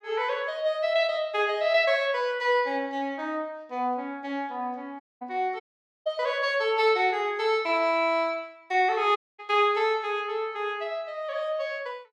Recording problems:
dropout; at 5 s, at 5.5 s and at 9 s

